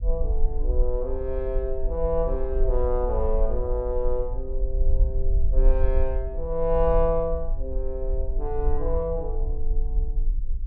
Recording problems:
low-frequency rumble; below 44 Hz, SNR 0 dB

